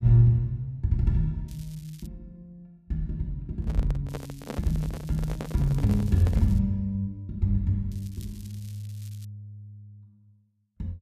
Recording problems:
crackle; at 1.5 s, from 4 to 6.5 s and from 8 to 9.5 s; loose cable, SNR 25 dB
handling noise; from 3.5 to 6.5 s; peak -4 dB vs average level

